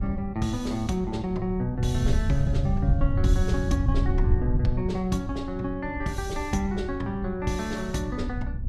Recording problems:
wind on the microphone; below 96 Hz, SNR 1 dB

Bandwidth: 15 kHz